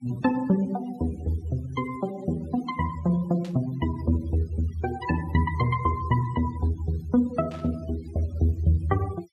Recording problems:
noise reduction artefacts; signal-to-artefact ratio 20 dB
burst of static; at 3.5 s and at 7.5 s; peak -15 dB vs average level

